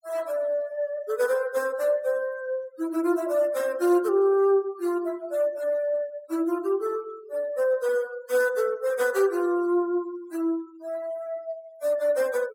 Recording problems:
denoising artefacts; signal-to-artefact ratio 22 dB

